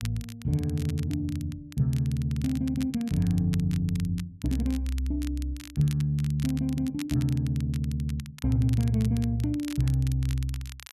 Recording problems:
crackle; vinyl, SNR 18 dB

